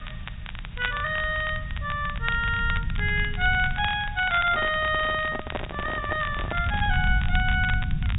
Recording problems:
low-pass filter; nothing above 4 kHz
background hiss; SNR 23 dB
rumble; below 110 Hz, SNR 6 dB
crackling; vinyl, SNR 13 dB
microphone handling noise; from 4.5 to 7 s; peak 0 dB vs average level

